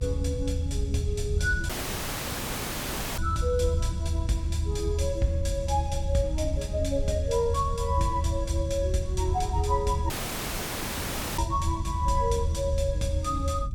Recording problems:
rumble; below 82 Hz, SNR 0 dB
dropout; at 1.5 s for 1.5 s and at 10 s for 1.5 s

